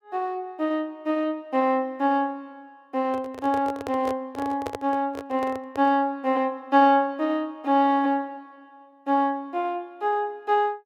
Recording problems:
microphone handling noise; from 3 to 6 s; peak -3 dB vs average level

